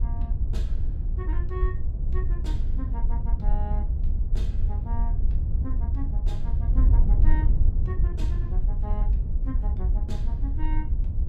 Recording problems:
wind noise; below 62 Hz, SNR -14 dB

